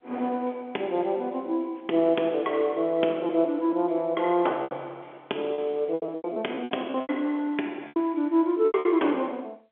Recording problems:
phone line; 260 Hz to 3.4 kHz, G.711
lost packets; 9% of the sound replaced, filled with repeated pitch periods

